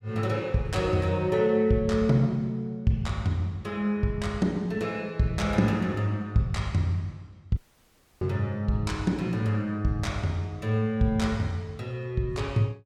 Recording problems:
dropout; at 7.5 s for 0.5 s

